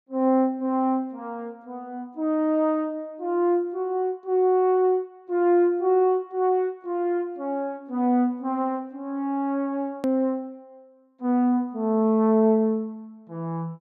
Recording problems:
hard cut with a click; at 10 s

